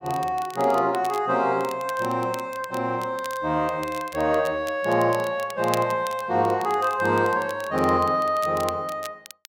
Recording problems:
crackling; vinyl, SNR 18 dB

